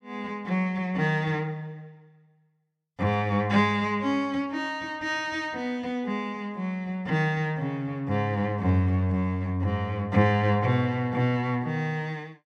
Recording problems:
none

